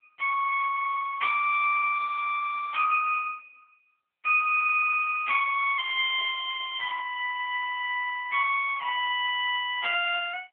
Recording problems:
telephone audio; 540 Hz to 3.3 kHz, AMR-NB

